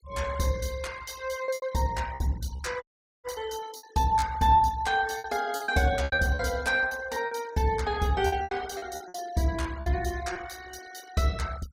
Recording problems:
noise reduction artefacts; signal-to-artefact ratio 19 dB
packet loss; 10% of the sound replaced, filled with repeated pitch periods
dropout; at 3 s

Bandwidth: 16 kHz